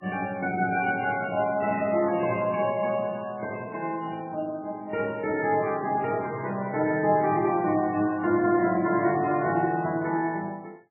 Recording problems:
codec artefacts; MP3, log-spectral distance 3 dB, nothing above 2.4 kHz

